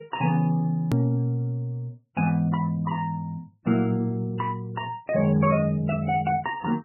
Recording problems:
lossy compression; MP3, log-spectral distance 2 dB, nothing above 2.5 kHz
hard cut with a click; at 1 s

